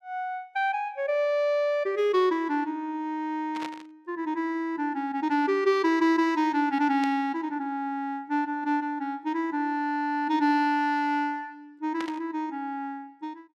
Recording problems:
static burst; at 3.5 s, at 7 s and at 12 s; peak -7 dB vs average level

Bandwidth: 14 kHz